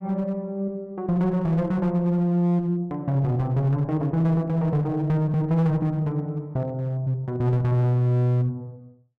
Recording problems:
distortion; hard clipping, uneven, signal-to-distortion ratio 9 dB

